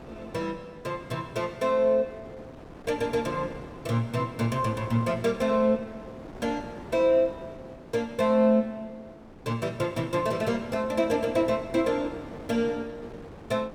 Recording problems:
wind on the microphone; below 650 Hz, SNR 17 dB

